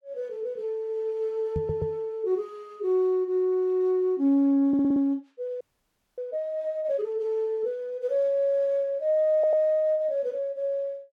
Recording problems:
microphone thump; at 1.5 s; peak -2 dB vs average level
stutter; at 1.5 s, at 4.5 s and at 9.5 s
frozen audio; at 5.5 s for 0.5 s

